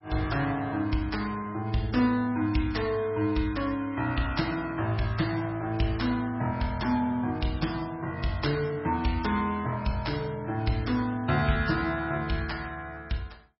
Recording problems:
lossy codec; MP3, log-spectral distance 4 dB, nothing above 5.5 kHz

